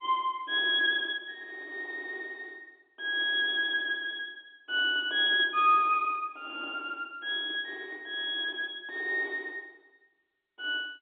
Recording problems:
telephone audio; 260 Hz to 3.6 kHz, G.711

